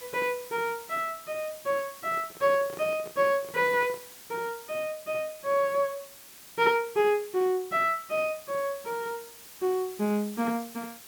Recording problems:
hiss; slope 0 dB per octave, SNR 17 dB
handling noise; from 2 to 4 s; peak -12 dB vs average level

